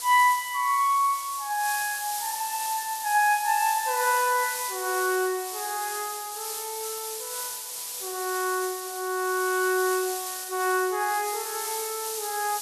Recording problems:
hiss; SNR 6 dB

